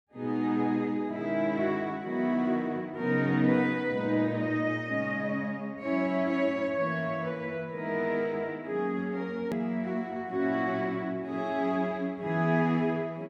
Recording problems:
hard cut with a click; at 9.5 s

